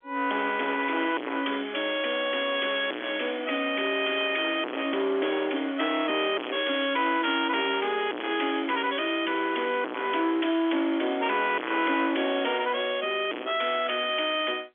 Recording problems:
phone line; 240 Hz to 3.4 kHz, G.711
distortion; hard clipping, uneven, signal-to-distortion ratio 0 dB

